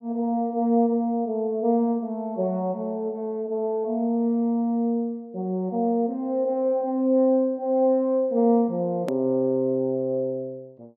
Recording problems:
click at an edit; at 9 s

